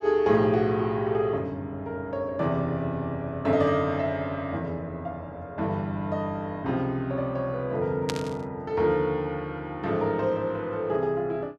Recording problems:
static burst; at 8 s; peak +1 dB vs average level

